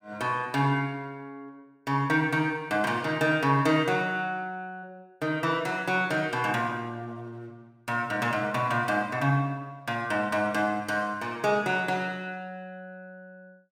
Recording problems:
none

